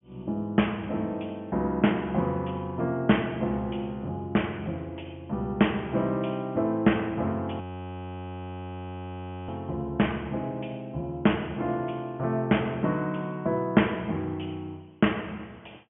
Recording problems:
low-pass filter; nothing above 3.3 kHz
frozen audio; at 7.5 s for 2 s

